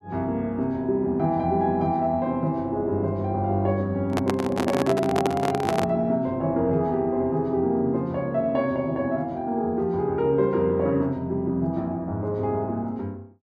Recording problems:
microphone handling noise; from 4 to 6 s; peak +3 dB vs average level

